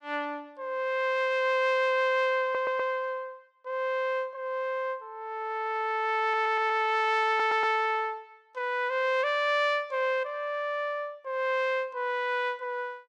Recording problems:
stutter; at 2.5 s, at 6 s and at 7.5 s

